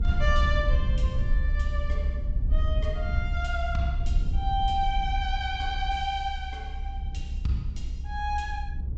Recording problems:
low-pass filter; nothing above 8 kHz
low-frequency rumble; below 66 Hz, SNR -2 dB

